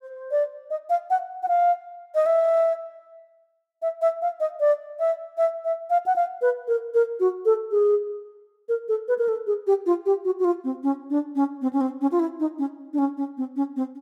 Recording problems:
none

